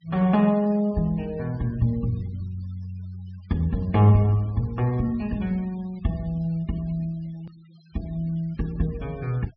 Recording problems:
treble missing; nothing above 5.5 kHz
noise reduction artefacts; signal-to-artefact ratio 27 dB
click at an edit; at 7.5 s

